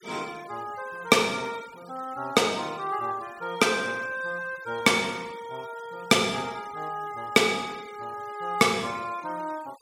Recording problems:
denoising artefacts; signal-to-artefact ratio 22 dB

